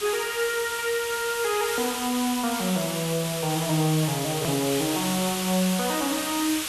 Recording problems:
hiss; SNR 4 dB
edit click; at 4.5 s

